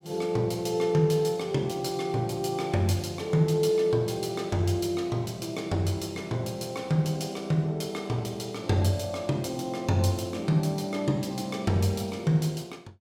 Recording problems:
none

